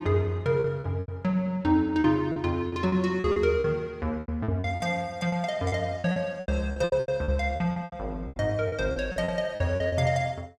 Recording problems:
lost packets; 16% of the sound replaced, filled with repeated pitch periods

